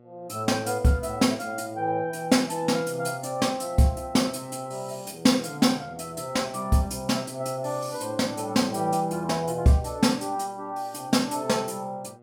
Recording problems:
electrical hum; 60 Hz, harmonics up to 1.4 kHz, SNR 27 dB

